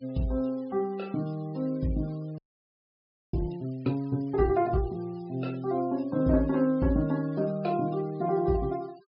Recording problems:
treble cut off; nothing above 5.5 kHz
denoising artefacts; signal-to-artefact ratio 26 dB
audio freezing; at 2.5 s for 1 s

